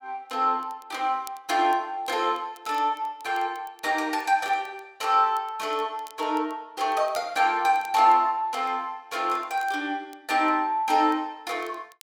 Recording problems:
crackling; vinyl, SNR 28 dB

